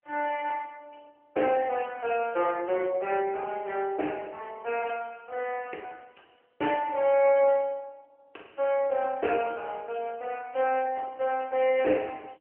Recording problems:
phone line; 280 Hz to 3 kHz, AMR-NB

